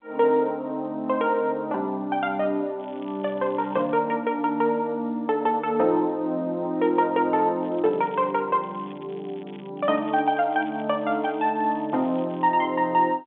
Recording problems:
telephone audio; 240 Hz to 3.7 kHz, G.711
crackle; 4 times, first at 3 s; loose cable, SNR 28 dB

